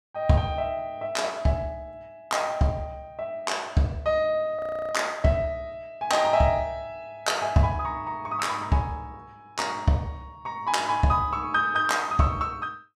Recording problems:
frozen audio; at 4.5 s

